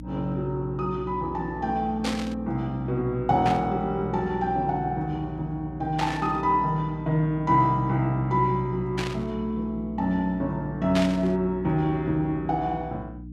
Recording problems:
hum; 60 Hz, harmonics up to 300 Hz, SNR 13 dB
burst of static; 5 times, first at 2 s; peak 0 dB vs average level

